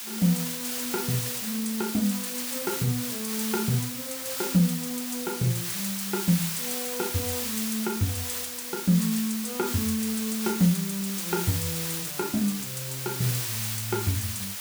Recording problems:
background hiss; slope +2 dB per octave, SNR 1 dB

